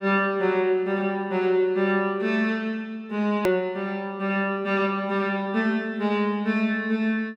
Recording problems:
edit click; at 3.5 s

